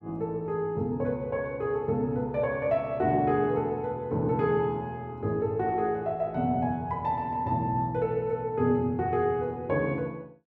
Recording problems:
none

